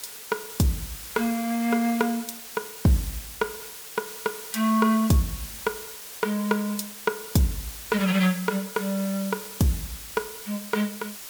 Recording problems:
background hiss; slope +1 dB per octave, SNR 10 dB

